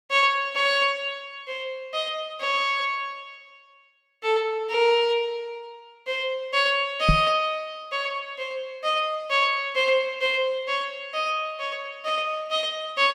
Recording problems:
knock on the microphone; at 7 s; peak +7 dB vs average level

